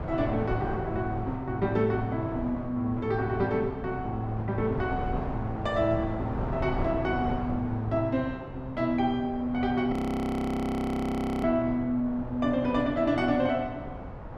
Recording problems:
wind on the microphone; below 600 Hz, SNR 9 dB
frozen audio; at 10 s for 1.5 s

